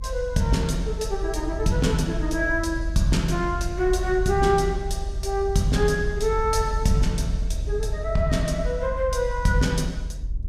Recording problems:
low-frequency rumble; below 66 Hz, strongest tone 44 Hz, SNR 6 dB

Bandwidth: 15.5 kHz